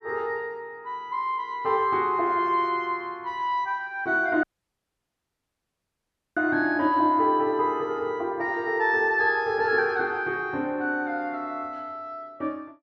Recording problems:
audio cutting out; at 4.5 s for 2 s

